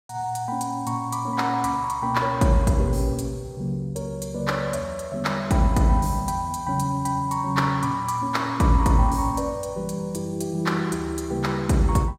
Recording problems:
none

